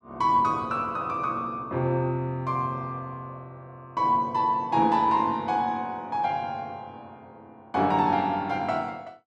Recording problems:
none

